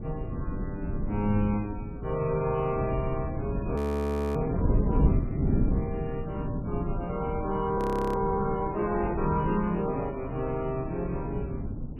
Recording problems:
lossy codec; MP3, log-spectral distance 2 dB, nothing above 13.7 kHz
wind on the microphone; below 200 Hz, SNR 2 dB
audio freezing; at 4 s for 0.5 s and at 8 s

